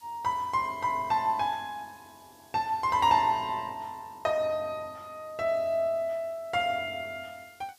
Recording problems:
background hiss; slope +1 dB per octave, SNR 29 dB

